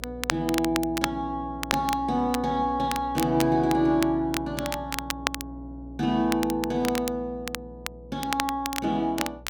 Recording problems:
mains hum; 60 Hz, harmonics up to 660 Hz, SNR 17 dB
crackle; vinyl, SNR 7 dB

